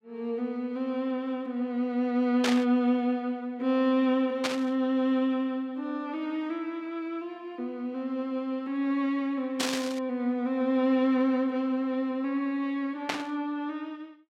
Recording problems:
burst of static; 4 times, first at 2.5 s; peak +4 dB vs average level

